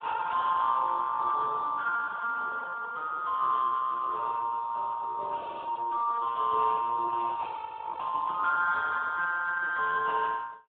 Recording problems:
telephone audio; 950 Hz to 2.6 kHz, Speex

